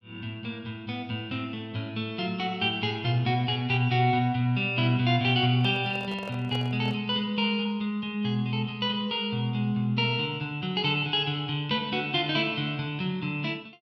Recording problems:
handling noise; from 5.5 to 7 s; peak -9 dB vs average level

